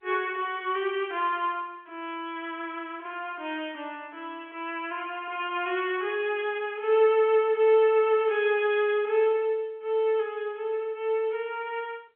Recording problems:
telephone audio; 220 Hz to 3.3 kHz, G.711

